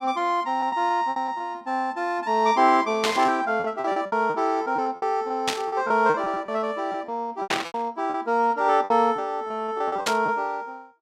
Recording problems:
lost packets; 12% of the sound replaced, filled with repeated pitch periods
static burst; 4 times, first at 3 s; peak +4 dB vs average level

